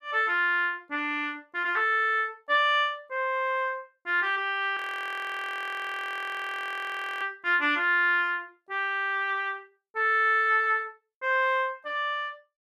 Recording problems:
audio freezing; at 5 s for 2.5 s

